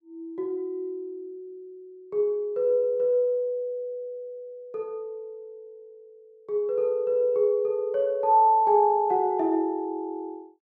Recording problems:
none

